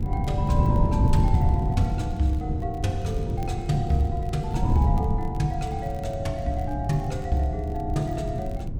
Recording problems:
wind on the microphone; below 150 Hz, SNR -1 dB
crackling; vinyl, SNR 28 dB

